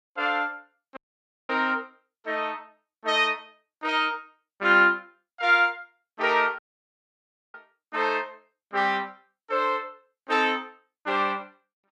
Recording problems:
dropout; at 1 s for 0.5 s and at 6.5 s for 1 s

